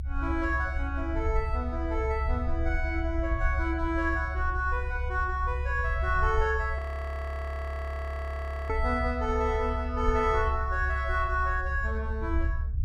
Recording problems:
low-frequency rumble; below 70 Hz, strongest tone 68 Hz, SNR 2 dB
audio freezing; at 7 s for 2 s

